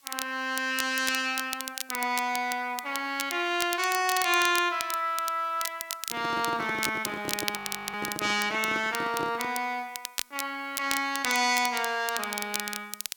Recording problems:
hiss; slope +2 dB per octave, SNR 29 dB
crackling; vinyl, SNR 7 dB
microphone handling noise; from 6 to 9.5 s; peak -4 dB vs average level
frozen audio; at 7.5 s

